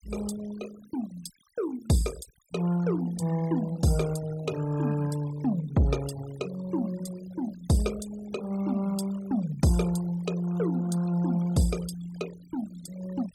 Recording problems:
noise reduction artefacts; signal-to-artefact ratio 17 dB

